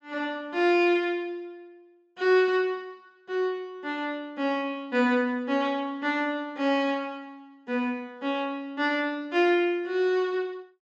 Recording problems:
low-pass filter; nothing above 8 kHz

